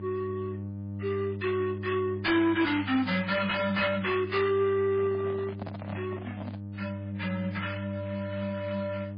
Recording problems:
lossy codec; MP3, then MP3, log-spectral distance 3 dB, nothing above 4.1 kHz
distortion; soft clipping, signal-to-distortion ratio 11 dB
hum; 50 Hz, harmonics up to 600 Hz, SNR 9 dB
microphone handling noise; from 5 to 6.5 s; peak -7 dB vs average level

